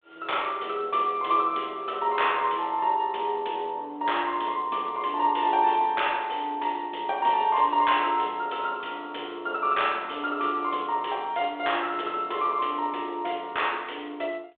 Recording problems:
telephone audio; 300 Hz to 3.6 kHz, G.726

